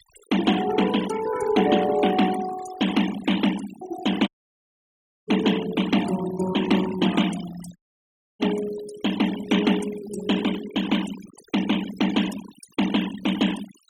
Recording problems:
noise reduction artefacts; signal-to-artefact ratio 11 dB
audio cutting out; at 4.5 s for 1 s and at 8 s for 0.5 s

